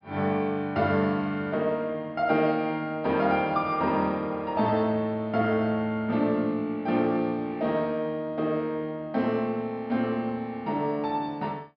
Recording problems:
low-pass filter; nothing above 5.5 kHz

